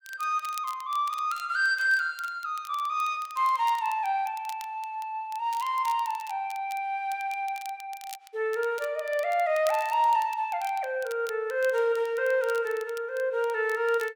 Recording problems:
crackle; vinyl, SNR 20 dB

